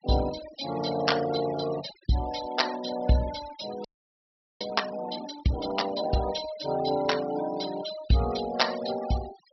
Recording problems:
low-pass filter; nothing above 5.7 kHz
noise reduction artefacts; signal-to-artefact ratio 13 dB
audio freezing; at 4 s for 0.5 s

